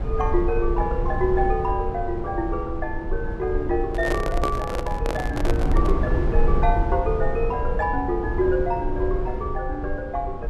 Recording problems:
low-frequency rumble; below 74 Hz, SNR 2 dB
microphone handling noise; from 4 to 6 s; peak +4 dB vs average level

